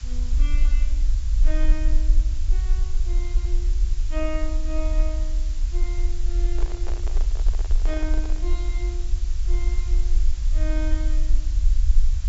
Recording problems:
treble cut off; nothing above 8 kHz
hiss; slope +1 dB per octave, SNR 9 dB
low-frequency rumble; below 44 Hz, SNR -12 dB
handling noise; from 6.5 to 8.5 s; peak +1 dB vs average level

